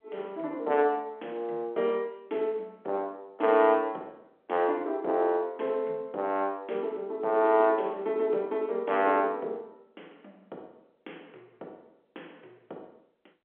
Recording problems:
telephone audio; 300 Hz to 3.9 kHz, G.711

